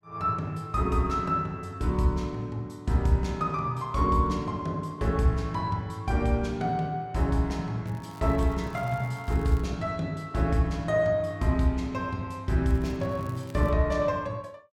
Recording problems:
crackling; from 8 to 9.5 s and from 13 to 14 s; loose cable, SNR 28 dB

